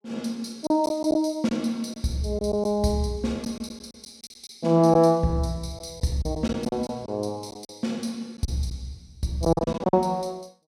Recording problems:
packet loss; 8% of the sound replaced, filled with silence

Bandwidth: 16.5 kHz